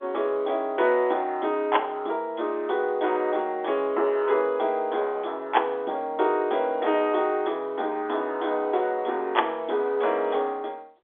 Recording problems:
telephone audio; 300 Hz to 3.5 kHz, G.711

